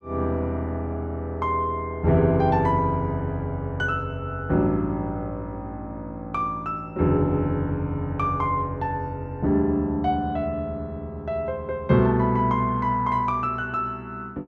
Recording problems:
none

